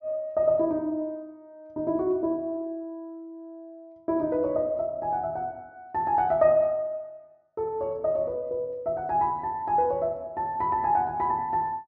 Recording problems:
treble cut off; nothing above 6.8 kHz

